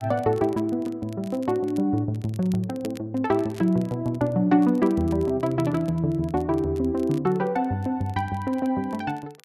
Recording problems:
crackle; vinyl, SNR 27 dB

